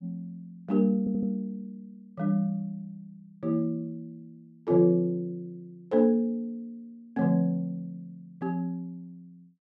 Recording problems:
audio stuttering; at 1 s

